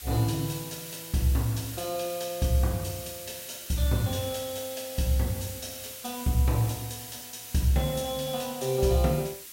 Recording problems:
background hiss; SNR 10 dB

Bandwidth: 16 kHz